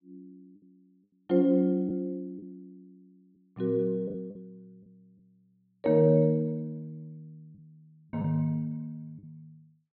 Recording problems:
treble missing; nothing above 4.5 kHz
lost packets; 4% of the sound replaced, filled with the last packet

